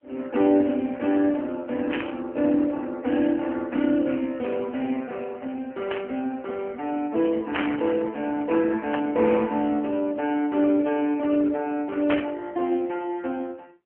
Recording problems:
telephone audio; 220 Hz to 3.2 kHz, AMR-NB
static burst; 5 times, first at 2 s; peak +1 dB vs average level

